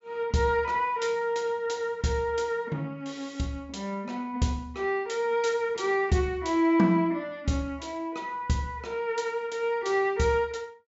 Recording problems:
treble missing; nothing above 8 kHz

